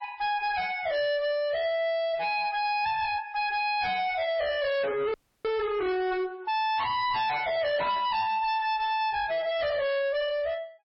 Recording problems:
codec artefacts; MP3, log-spectral distance 2 dB, nothing above 5.3 kHz
distorted audio; hard clipping, uneven, signal-to-distortion ratio 6 dB
dropout; at 5 s

